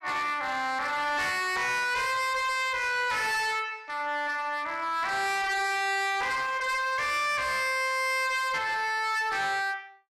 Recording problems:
distortion; hard clipping, signal-to-distortion ratio 6 dB

